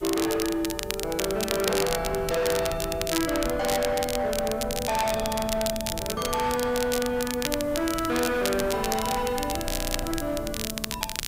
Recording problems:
distortion; hard clipping, signal-to-distortion ratio 11 dB
hiss; SNR 23 dB
wind noise; below 210 Hz, SNR 12 dB
crackling; vinyl, SNR 5 dB
audio freezing; at 9.5 s

